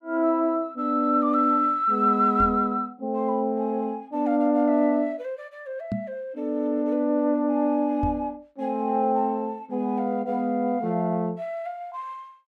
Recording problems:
microphone bump; at 2.5 s, at 6 s and at 8 s; peak -1 dB vs average level

